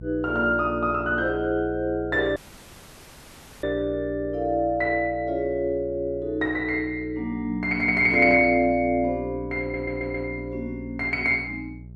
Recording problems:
hum; 60 Hz, harmonics up to 420 Hz, SNR 16 dB
audio cutting out; at 2.5 s for 1.5 s
audio stuttering; at 9.5 s

